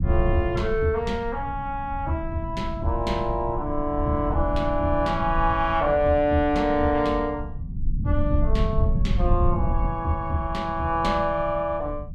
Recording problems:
low-frequency rumble; below 96 Hz, SNR 5 dB

